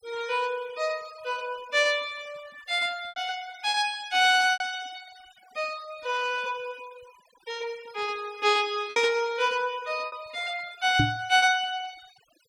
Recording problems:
noise reduction artefacts; signal-to-artefact ratio 22 dB
packet loss; 3% of the sound replaced, filled with repeated pitch periods
microphone thump; at 11 s; peak +5 dB vs average level

